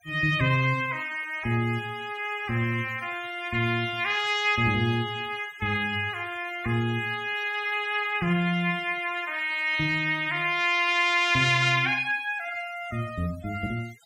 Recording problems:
noise reduction artefacts; signal-to-artefact ratio 21 dB

